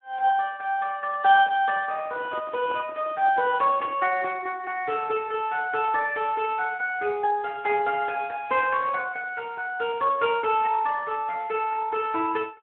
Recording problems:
phone line; 280 Hz to 3.1 kHz, Speex
handling noise; from 2 to 4 s; peak -8 dB vs average level

